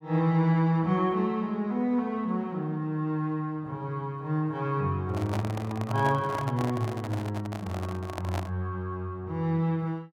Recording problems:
handling noise; from 5 to 8.5 s; peak -2 dB vs average level

